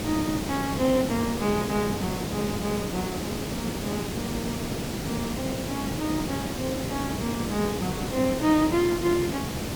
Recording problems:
hiss; SNR 2 dB

